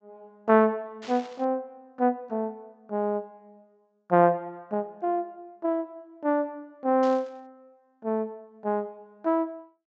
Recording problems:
low-pass filter; nothing above 8 kHz
burst of static; at 1 s and at 7 s; peak -12 dB vs average level

